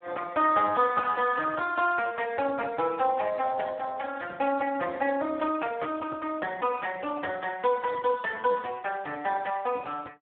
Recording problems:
phone line; 220 Hz to 2.6 kHz, Speex

